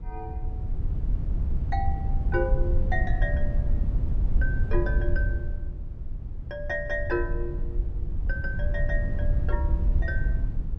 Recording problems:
low-frequency rumble; below 72 Hz, SNR -4 dB

